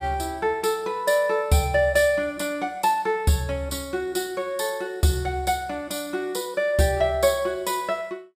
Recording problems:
none

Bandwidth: 15 kHz